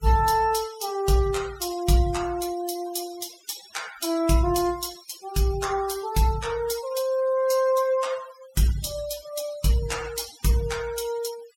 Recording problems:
denoising artefacts; signal-to-artefact ratio 16 dB

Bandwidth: 16.5 kHz